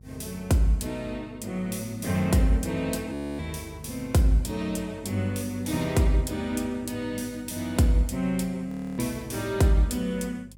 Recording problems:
mains hum; 50 Hz, harmonics up to 400 Hz, SNR 21 dB
audio freezing; at 3 s and at 8.5 s

